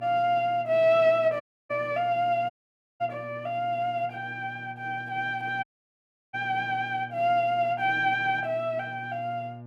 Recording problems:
hum; 60 Hz, harmonics up to 1.2 kHz, SNR 19 dB
audio cutting out; at 1.5 s, at 2.5 s for 0.5 s and at 5.5 s for 0.5 s

